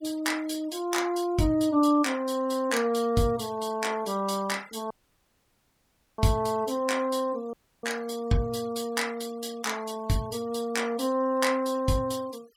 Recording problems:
noise reduction artefacts; signal-to-artefact ratio 22 dB
dropout; at 5 s for 1.5 s and at 7.5 s

